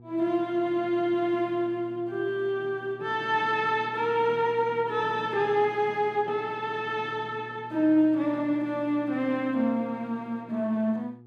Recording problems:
hum; 60 Hz, harmonics up to 720 Hz, SNR 21 dB

